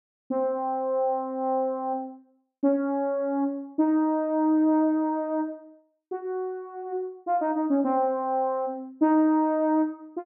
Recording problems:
none

